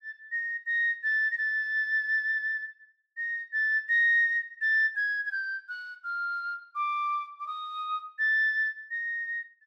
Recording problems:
none

